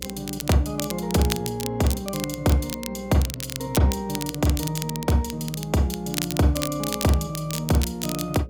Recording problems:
electrical hum; 60 Hz, harmonics up to 600 Hz, SNR 18 dB
crackling; vinyl, SNR 8 dB

